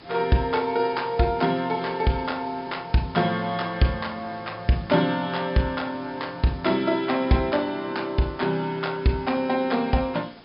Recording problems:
treble missing; nothing above 5.5 kHz
background hiss; SNR 22 dB

